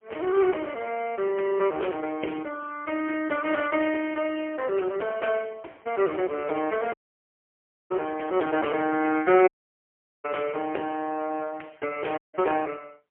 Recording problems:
phone line; 320 Hz to 3.1 kHz, AMR-NB, then MP3
audio cutting out; at 7 s for 1 s, at 9.5 s for 1 s and at 12 s

